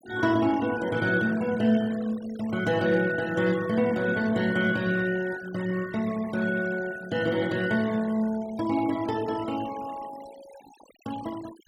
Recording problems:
noise reduction artefacts; signal-to-artefact ratio 18 dB

